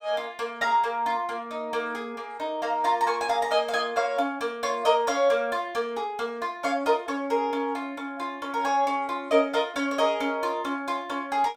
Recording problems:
none

